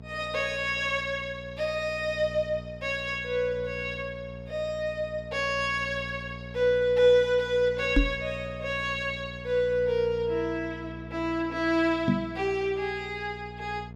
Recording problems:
hum; 60 Hz, harmonics up to 900 Hz, SNR 15 dB
microphone bump; at 8 s and at 12 s; peak +8 dB vs average level

